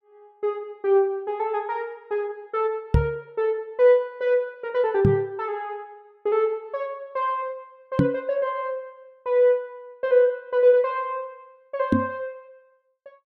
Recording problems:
microphone thump; 4 times, first at 3 s; peak +8 dB vs average level

